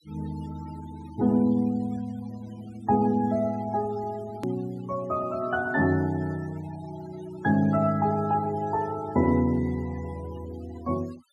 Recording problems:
denoising artefacts; signal-to-artefact ratio 22 dB
hard cut with a click; at 4.5 s

